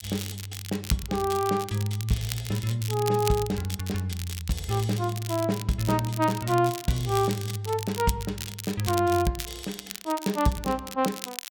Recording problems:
crackling; vinyl, SNR 10 dB

